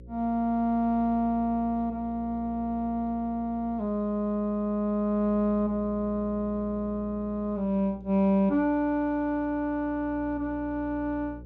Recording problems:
electrical hum; 60 Hz, harmonics up to 540 Hz, SNR 18 dB

